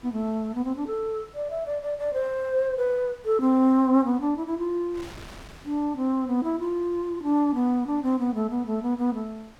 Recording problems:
wind noise; below 2.2 kHz, SNR 24 dB

